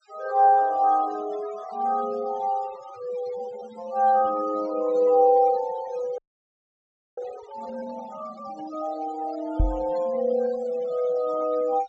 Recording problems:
low-pass filter; nothing above 8 kHz
denoising artefacts; signal-to-artefact ratio 19 dB
audio freezing; at 6 s for 1 s
knock on the microphone; at 9.5 s; peak +4 dB vs average level

